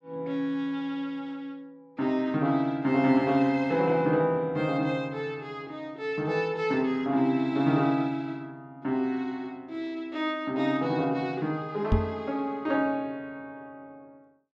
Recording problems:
microphone bump; at 12 s; peak +6 dB vs average level

